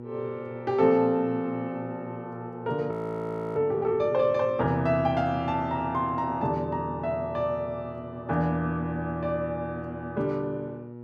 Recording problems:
hum; 60 Hz, harmonics up to 960 Hz, SNR 13 dB
audio freezing; at 3 s for 0.5 s

